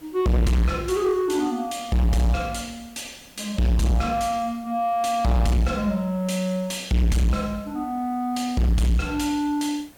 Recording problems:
distorted audio; soft clipping, signal-to-distortion ratio 6 dB
background hiss; slope -4 dB per octave, SNR 27 dB

